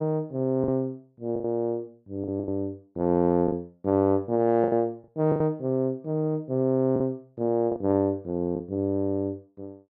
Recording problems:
packet loss; 7% of the sound replaced, filled with the last packet

